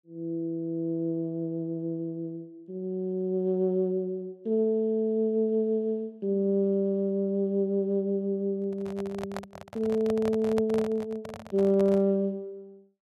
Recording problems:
handling noise; from 8.5 to 12 s; peak -3 dB vs average level

